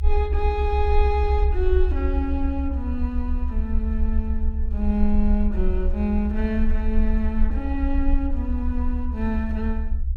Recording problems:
low-frequency rumble; below 68 Hz, SNR -2 dB

